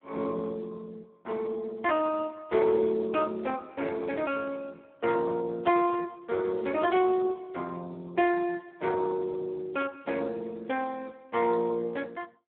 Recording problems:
telephone audio; 280 Hz to 3.4 kHz, Speex

